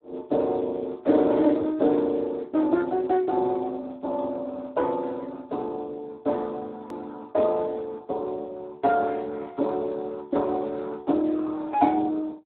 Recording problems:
phone line; 240 Hz to 2.1 kHz, Speex
edit click; at 7 s

